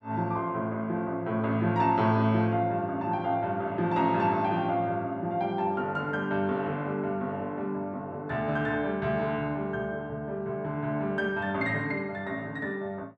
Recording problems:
none

